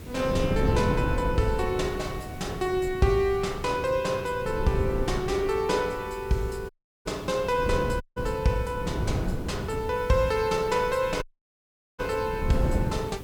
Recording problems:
hiss; slope -1 dB per octave, SNR 24 dB
wind noise; below 250 Hz, SNR 5 dB
audio cutting out; at 6.5 s, at 8 s and at 11 s for 1 s

